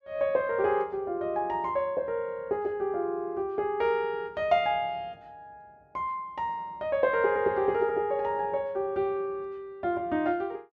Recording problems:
none

